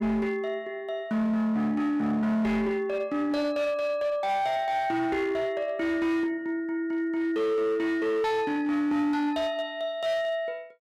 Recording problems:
distortion; hard clipping, signal-to-distortion ratio 12 dB

